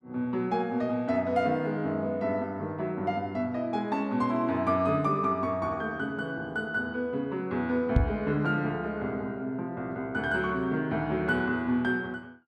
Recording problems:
microphone bump; at 8 s; peak +9 dB vs average level

